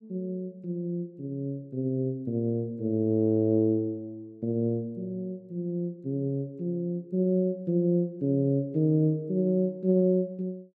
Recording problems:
none

